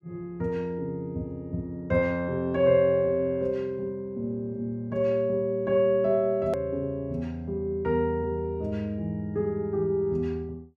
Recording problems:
click at an edit; at 6.5 s

